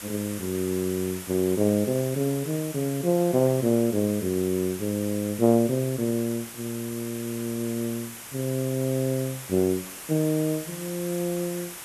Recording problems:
hiss; SNR 11 dB

